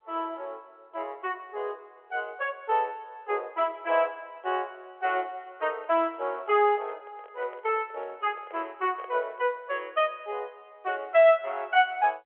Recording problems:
phone line; 340 Hz to 3.3 kHz, G.711
microphone handling noise; from 5.5 to 9.5 s; peak -11 dB vs average level

